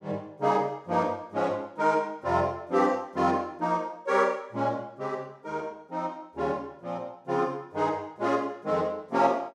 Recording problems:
none

